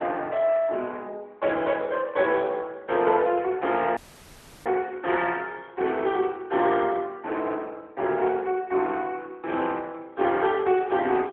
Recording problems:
phone line; 280 Hz to 3.4 kHz, AMR-NB
audio cutting out; at 4 s for 0.5 s

